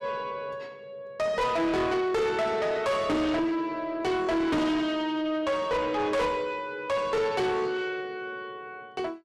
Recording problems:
distortion; soft clipping, signal-to-distortion ratio 7 dB

